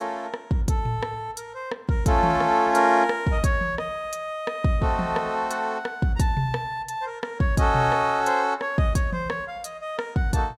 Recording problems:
none

